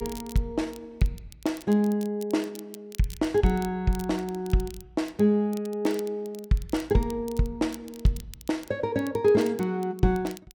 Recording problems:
crackle; vinyl, SNR 21 dB

